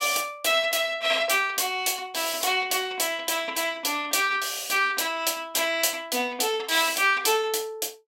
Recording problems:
none

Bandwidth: 16 kHz